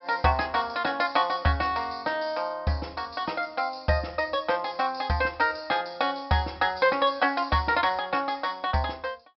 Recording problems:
treble missing; nothing above 5.3 kHz

